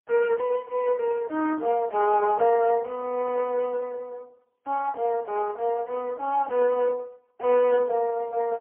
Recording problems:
phone line; 280 Hz to 2.3 kHz, AMR-NB, then MP3

